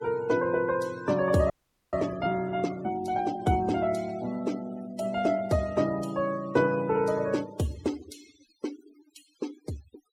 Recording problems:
denoising artefacts; signal-to-artefact ratio 19 dB
audio freezing; at 1.5 s

